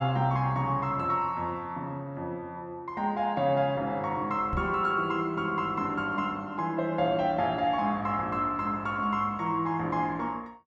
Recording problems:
microphone bump; at 4.5 s; peak -1 dB vs average level

